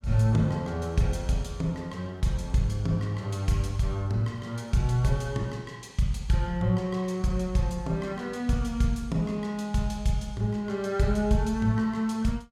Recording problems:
none

